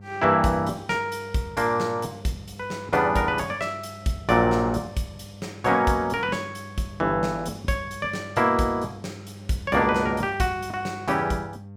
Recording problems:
hum; 50 Hz, harmonics up to 900 Hz, SNR 18 dB

